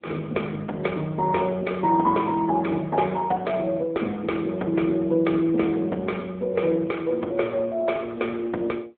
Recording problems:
phone line; 240 Hz to 3.4 kHz, AMR-NB

